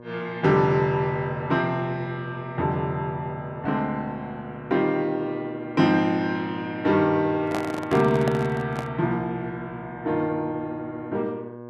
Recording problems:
mains hum; 60 Hz, harmonics up to 1.6 kHz, SNR 16 dB
handling noise; from 7.5 to 9 s; peak 0 dB vs average level

